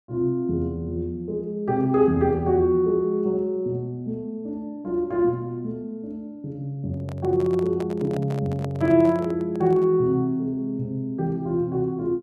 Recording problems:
microphone handling noise; from 7 to 10 s; peak -7 dB vs average level

